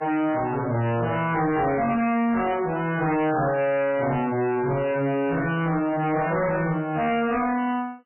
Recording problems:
codec artefacts; MP3, log-spectral distance 4 dB, nothing above 2.4 kHz
distorted audio; hard clipping, signal-to-distortion ratio 6 dB

